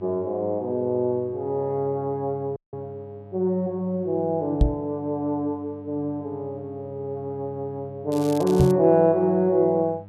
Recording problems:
hum; 50 Hz, harmonics up to 700 Hz, SNR 20 dB
audio cutting out; at 2.5 s
microphone bump; at 4.5 s and at 8.5 s; peak +8 dB vs average level
crackle; at 8 s; loose cable, SNR 17 dB

